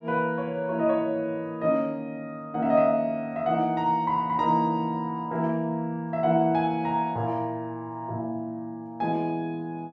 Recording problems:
none

